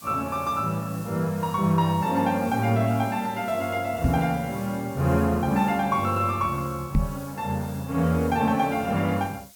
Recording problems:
background hiss; SNR 20 dB
microphone bump; at 4 s and at 7 s; peak +5 dB vs average level

